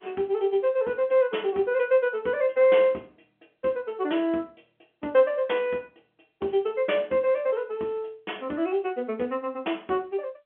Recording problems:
telephone audio; 240 Hz to 3.5 kHz, G.711

